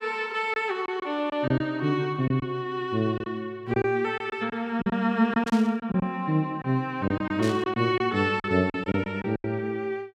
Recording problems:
packet loss; 9% of the sound replaced, filled with silence
static burst; at 5.5 s and at 7.5 s; peak -7 dB vs average level

